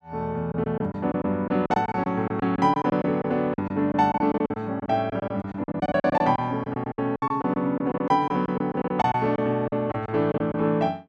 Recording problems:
lost packets; 15% of the sound replaced, filled with silence

